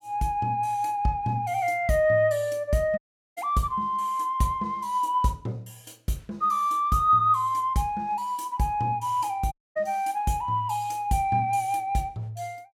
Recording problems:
audio cutting out; at 3 s and at 9.5 s

